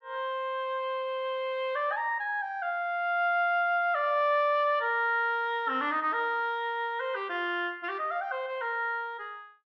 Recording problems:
none

